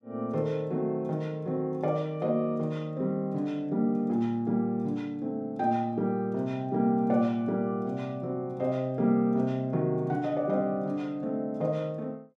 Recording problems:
none

